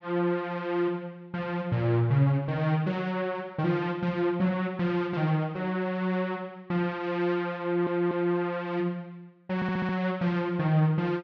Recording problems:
stutter; at 7.5 s and at 9.5 s

